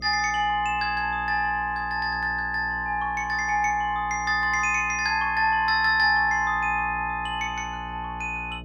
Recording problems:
mains hum; 60 Hz, harmonics up to 660 Hz, SNR 18 dB

